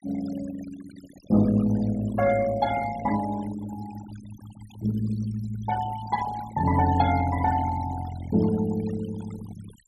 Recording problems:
denoising artefacts; signal-to-artefact ratio 16 dB

